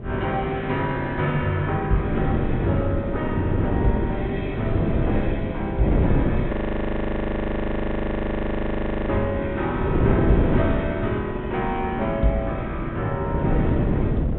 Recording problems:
low-pass filter; nothing above 3.8 kHz
wind on the microphone; below 310 Hz, SNR 0 dB
audio freezing; at 6.5 s for 2.5 s

